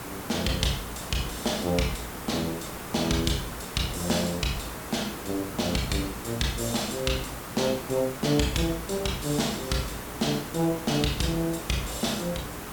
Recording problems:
hum; 60 Hz, harmonics up to 480 Hz, SNR 17 dB
hiss; SNR 8 dB

